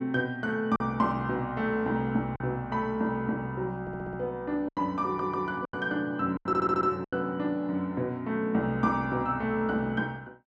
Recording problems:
packet loss; 4% of the sound replaced, filled with silence
stutter; at 4 s, at 5 s and at 6.5 s

